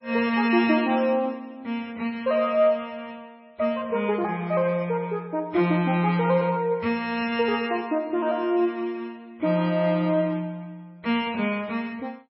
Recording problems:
lossy codec; MP3, log-spectral distance 2 dB, nothing above 5.3 kHz

